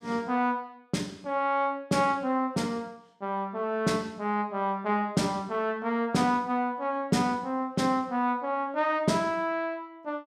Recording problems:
none

